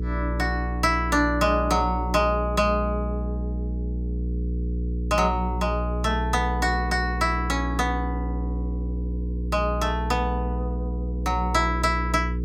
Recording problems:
hum; 60 Hz, harmonics up to 480 Hz, SNR 4 dB

